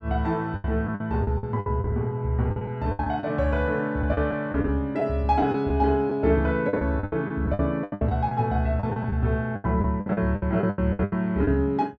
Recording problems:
lost packets; 15% of the sound replaced, filled with the last packet

